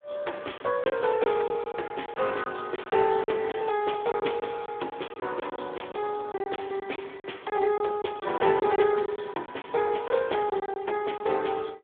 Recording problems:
telephone audio; 280 Hz to 3.5 kHz, Speex
lost packets; 10% of the sound replaced, filled with silence

